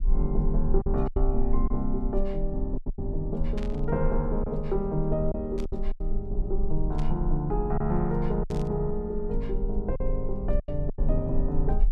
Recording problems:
low-frequency rumble; below 38 Hz, strongest tone 22 Hz, SNR 3 dB
packet loss; 6% of the sound replaced, filled with silence
static burst; 4 times, first at 3.5 s; peak -10 dB vs average level

